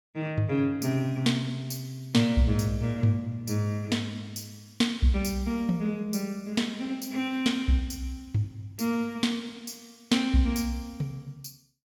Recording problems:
none

